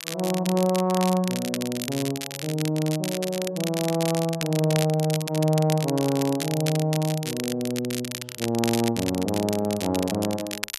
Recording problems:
crackle; vinyl, SNR 8 dB

